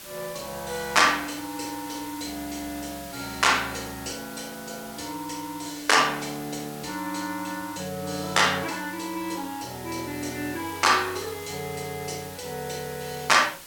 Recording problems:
hiss; slope 0 dB per octave, SNR 14 dB

